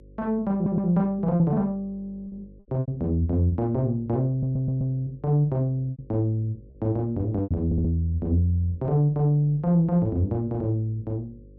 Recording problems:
hum; 50 Hz, harmonics up to 550 Hz, SNR 25 dB
packet loss; 4% of the sound replaced, filled with repeated pitch periods
audio stuttering; at 0.5 s, at 4.5 s and at 7.5 s

